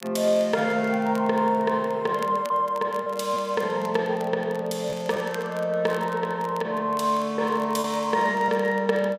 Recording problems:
crackling; vinyl, SNR 24 dB
lost packets; 2% of the sound replaced, filled with repeated pitch periods

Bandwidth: 15.5 kHz